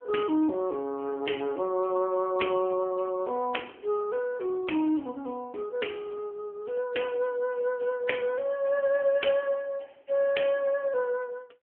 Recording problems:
telephone audio; 240 Hz to 3.2 kHz, AMR-NB

